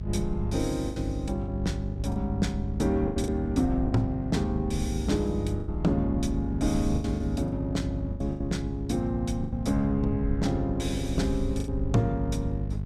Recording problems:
mains hum; 50 Hz, harmonics up to 450 Hz, SNR 5 dB
low-frequency rumble; below 66 Hz, strongest tone 62 Hz, SNR 8 dB
packet loss; 7% of the sound replaced, filled with the last packet

